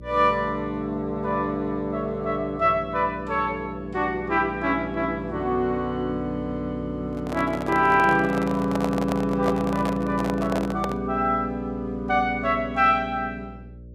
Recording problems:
electrical hum; 60 Hz, harmonics up to 600 Hz, SNR 17 dB
microphone handling noise; from 7 to 11 s; peak 0 dB vs average level

